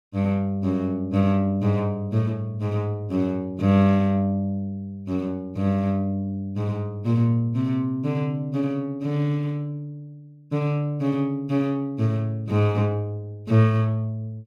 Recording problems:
none

